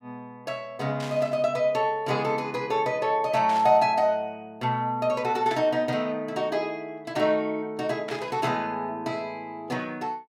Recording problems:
static burst; 4 times, first at 1 s; peak -7 dB vs average level

